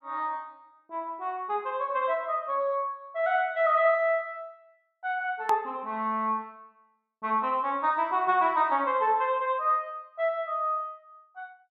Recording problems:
edit click; at 5.5 s

